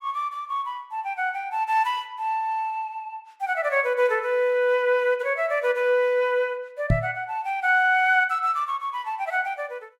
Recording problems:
microphone bump; at 7 s; peak +6 dB vs average level

